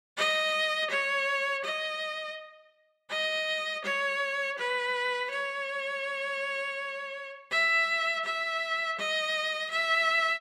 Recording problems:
none

